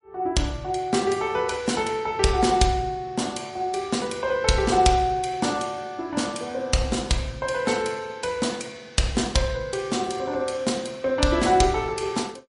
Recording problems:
lossy compression; MP3, log-spectral distance 4 dB, nothing above 10.4 kHz

